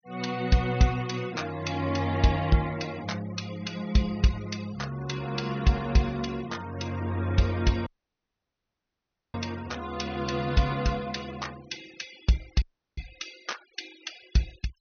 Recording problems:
treble cut off; nothing above 6.2 kHz
noise reduction artefacts; signal-to-artefact ratio 20 dB
audio cutting out; at 8 s for 1.5 s and at 13 s

